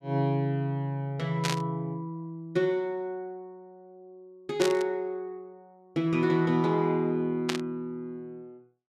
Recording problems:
static burst; at 1.5 s, at 4.5 s and at 7.5 s; peak +3 dB vs average level

